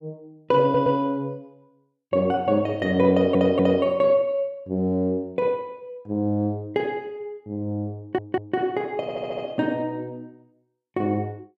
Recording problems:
audio stuttering; 4 times, first at 0.5 s

